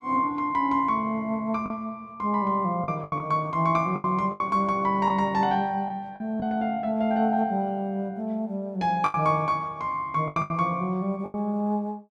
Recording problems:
lost packets; 6% of the sound replaced, filled with the last packet

